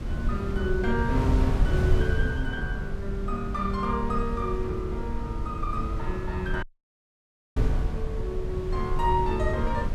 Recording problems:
wind noise; below 100 Hz, SNR -1 dB
audio cutting out; at 6.5 s for 1 s

